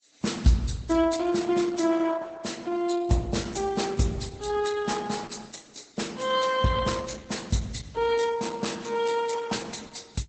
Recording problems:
codec artefacts; Vorbis, then Opus, log-spectral distance 5 dB, nothing above 8 kHz

